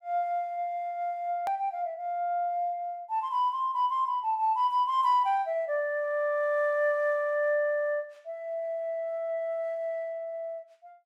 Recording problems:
hard cut with a click; at 1.5 s

